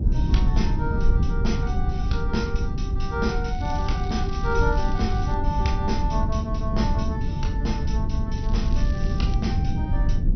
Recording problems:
lossy codec; MP2, log-spectral distance 2 dB, nothing above 6 kHz
hum; 50 Hz, harmonics up to 300 Hz, SNR 13 dB
low-frequency rumble; below 100 Hz, SNR -4 dB
crackle; from 3.5 to 5.5 s and at 8.5 s; loose cable, SNR 18 dB

